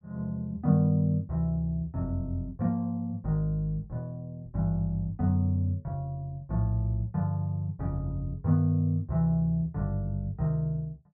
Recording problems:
none

